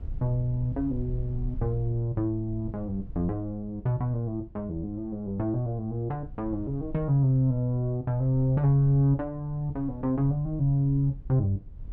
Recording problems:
low-frequency rumble; below 74 Hz, SNR 15 dB

